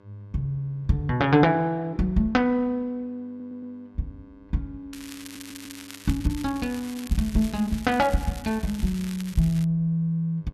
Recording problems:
hum; 50 Hz, harmonics up to 1.7 kHz, SNR 29 dB
stutter; at 3.5 s and at 5 s
crackle; from 5 to 9.5 s; loose cable, SNR 17 dB

